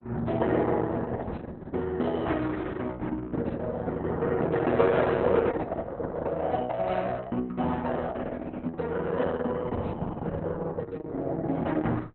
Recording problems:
codec artefacts; Opus, log-spectral distance 3 dB, nothing above 4 kHz

